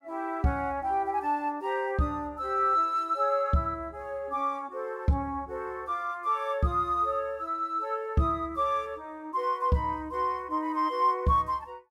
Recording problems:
none

